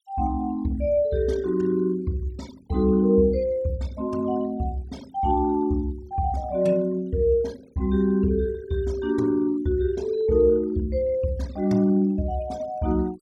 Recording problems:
noise reduction artefacts; signal-to-artefact ratio 25 dB

